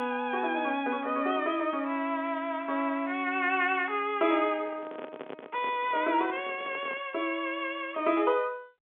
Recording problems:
telephone audio; 220 Hz to 3.5 kHz, G.711
microphone handling noise; from 4.5 to 7 s; peak -7 dB vs average level

